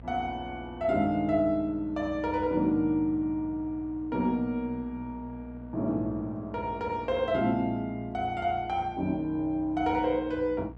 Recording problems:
electrical hum; 60 Hz, harmonics up to 960 Hz, SNR 18 dB

